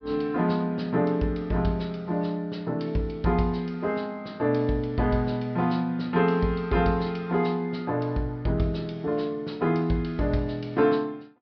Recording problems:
low-pass filter; nothing above 5.5 kHz

